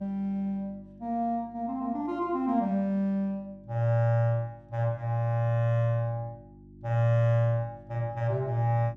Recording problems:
hum; 50 Hz, harmonics up to 350 Hz, SNR 24 dB

